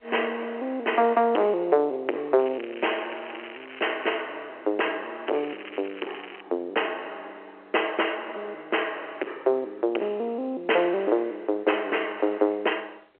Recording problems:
phone line; 320 Hz to 3.1 kHz, G.711
distorted audio; soft clipping, signal-to-distortion ratio 10 dB
crackle; from 2.5 to 4 s and from 5.5 to 6.5 s; loose cable, SNR 16 dB

